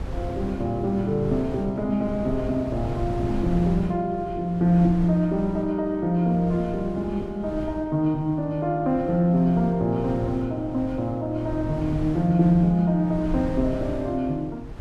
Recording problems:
wind on the microphone; below 170 Hz, SNR 12 dB

